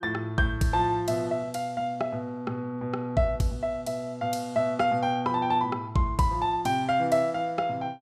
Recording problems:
none

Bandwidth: 15.5 kHz